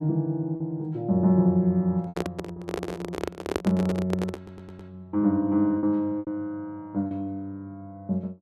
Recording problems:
packet loss; 4% of the sound replaced, filled with repeated pitch periods
microphone handling noise; from 2 to 5 s; peak +3 dB vs average level
audio stuttering; at 4.5 s

